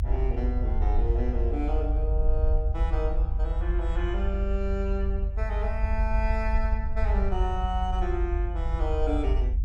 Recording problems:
low-frequency rumble; below 62 Hz, strongest tone 48 Hz, SNR -5 dB

